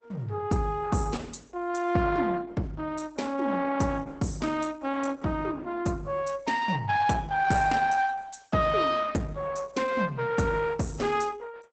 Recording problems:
lossy compression; Opus, log-spectral distance 4 dB, nothing above 8 kHz

